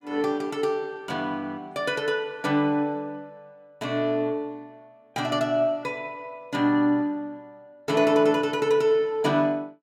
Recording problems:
none

